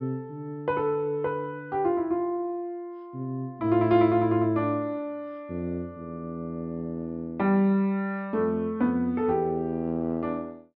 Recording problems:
low-pass filter; nothing above 5.3 kHz

